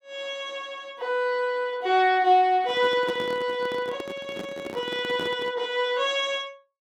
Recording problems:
handling noise; from 2.5 to 5.5 s; peak -4 dB vs average level

